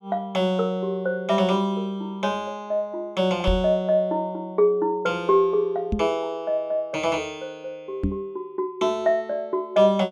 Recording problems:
microphone thump; at 3.5 s, at 6 s and at 8 s; peak +3 dB vs average level

